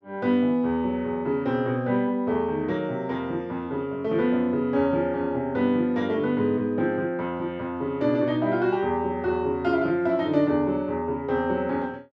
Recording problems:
none

